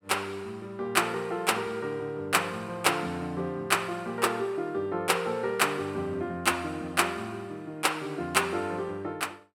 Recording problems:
none

